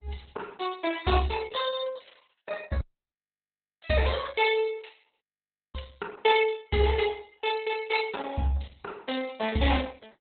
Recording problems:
lossy codec; Opus, log-spectral distance 6 dB, nothing above 4 kHz
audio cutting out; at 3 s for 1 s and at 5 s for 0.5 s

